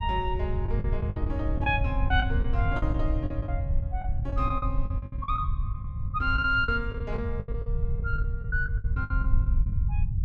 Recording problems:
low-frequency rumble; below 90 Hz, SNR -1 dB
packet loss; 15% of the sound replaced, filled with the last packet

